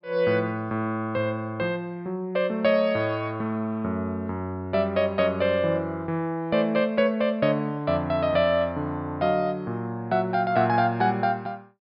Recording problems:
treble missing; nothing above 5.2 kHz

